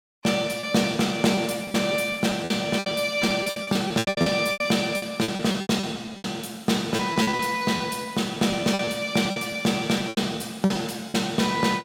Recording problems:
lost packets; 15% of the sound replaced, filled with repeated pitch periods

